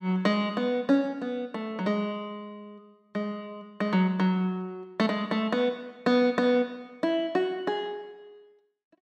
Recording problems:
none

